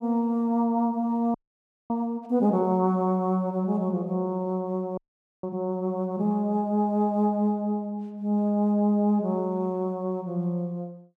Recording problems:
audio freezing; at 1.5 s for 0.5 s and at 5 s

